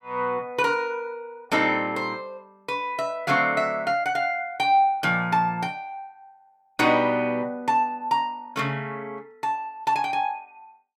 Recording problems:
none

